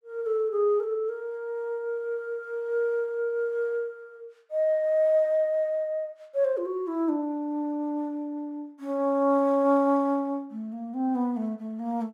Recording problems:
none

